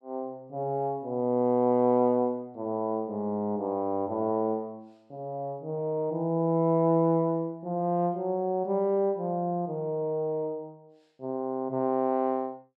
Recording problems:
none

